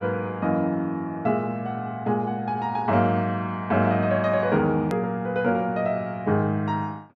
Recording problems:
edit click; at 5 s

